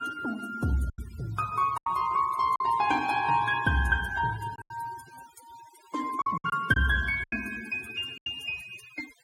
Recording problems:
noise reduction artefacts; signal-to-artefact ratio 19 dB
packet loss; 7% of the sound replaced, filled with silence

